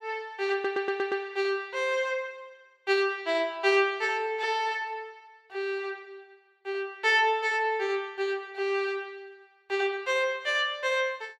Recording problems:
stutter; at 0.5 s

